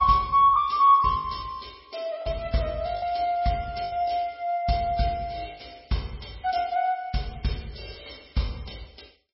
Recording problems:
lossy compression; MP3, log-spectral distance 6 dB, nothing above 5.3 kHz
lost packets; 5% of the sound replaced, filled with the last packet

